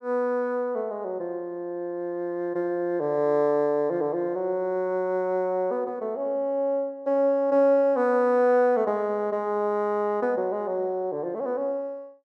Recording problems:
none

